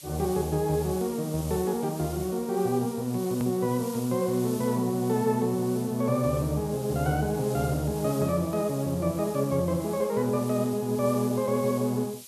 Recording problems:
background hiss; SNR 16 dB
click at an edit; at 3.5 s

